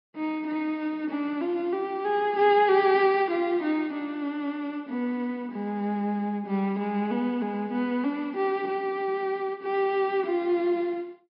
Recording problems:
low-pass filter; nothing above 5.5 kHz

